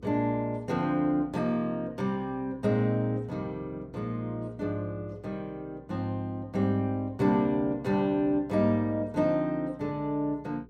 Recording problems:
mains hum; 60 Hz, harmonics up to 480 Hz, SNR 25 dB

